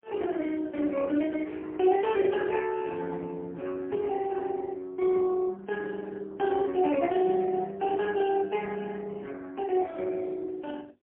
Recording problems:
phone line; 240 Hz to 3.1 kHz, AMR-NB, then MP3

